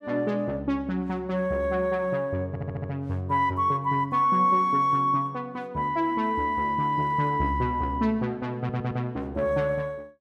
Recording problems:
stutter; at 2.5 s and at 8.5 s

